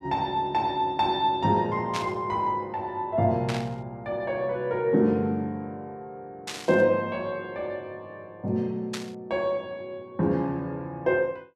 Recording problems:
static burst; 4 times, first at 2 s; peak -1 dB vs average level

